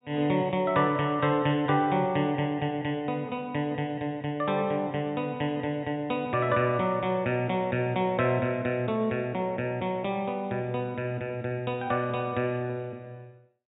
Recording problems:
treble cut off; nothing above 4 kHz

